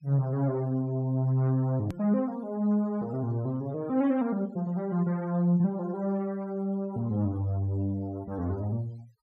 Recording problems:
noise reduction artefacts; signal-to-artefact ratio 27 dB
edit click; at 2 s

